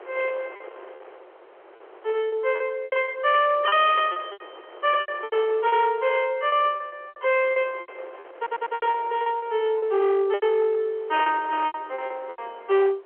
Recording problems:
phone line; 340 Hz to 3.3 kHz, G.711
distorted audio; hard clipping, uneven, signal-to-distortion ratio 12 dB
wind noise; below 1.4 kHz, SNR 21 dB
packet loss; 14% of the sound replaced, filled with repeated pitch periods
stutter; at 8.5 s

